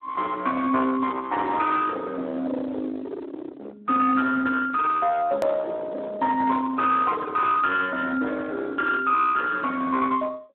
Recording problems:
phone line; 950 Hz to 2.2 kHz, Speex
distorted audio; hard clipping, signal-to-distortion ratio 11 dB
click at an edit; at 5.5 s

